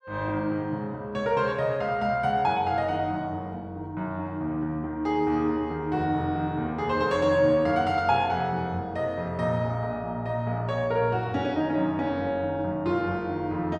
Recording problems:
none

